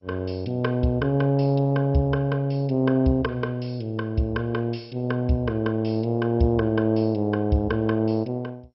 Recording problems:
lossy compression; MP2, log-spectral distance 3 dB, nothing above 5.5 kHz

